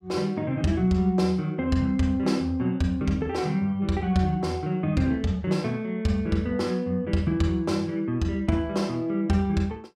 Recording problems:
none

